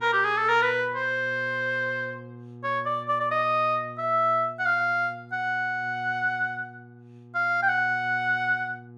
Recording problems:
hum; 60 Hz, harmonics up to 840 Hz, SNR 19 dB

